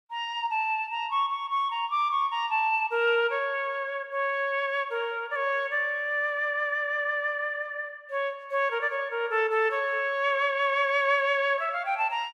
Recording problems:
none

